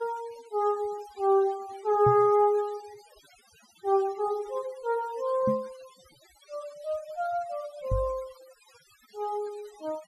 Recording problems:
denoising artefacts; signal-to-artefact ratio 24 dB
microphone thump; at 2 s, at 5.5 s and at 8 s; peak +2 dB vs average level

